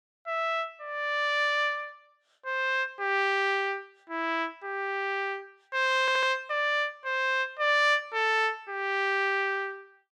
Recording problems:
stutter; at 6 s

